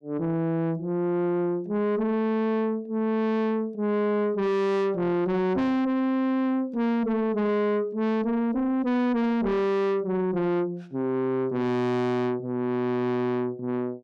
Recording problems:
distortion; soft clipping, signal-to-distortion ratio 6 dB

